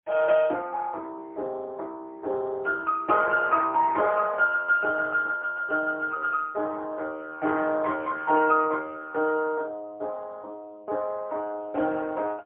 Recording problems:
telephone audio; 260 Hz to 2.5 kHz, AMR-NB, then MP3

